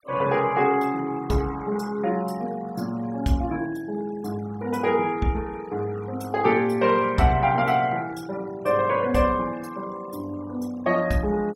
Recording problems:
denoising artefacts; signal-to-artefact ratio 22 dB

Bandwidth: 16.5 kHz